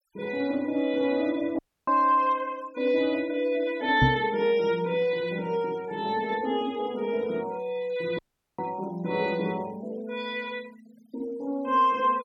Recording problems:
denoising artefacts; signal-to-artefact ratio 25 dB
audio cutting out; at 1.5 s and at 8 s
knock on the microphone; at 4 s; peak +7 dB vs average level

